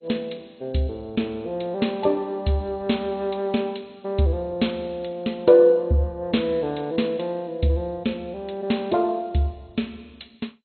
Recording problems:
codec artefacts; MP2, log-spectral distance 4 dB, nothing above 4.2 kHz

